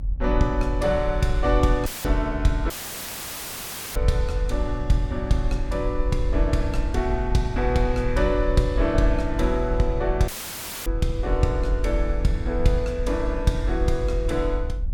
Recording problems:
hum; 60 Hz, harmonics up to 840 Hz, SNR 22 dB
low-frequency rumble; below 52 Hz, strongest tone 44 Hz, SNR 4 dB
dropout; at 2 s, at 2.5 s for 1.5 s and at 10 s for 0.5 s; filled with static

